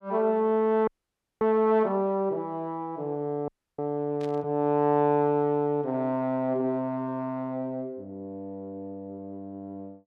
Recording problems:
frozen audio; at 1 s for 0.5 s and at 3.5 s
static burst; at 4 s; peak -16 dB vs average level

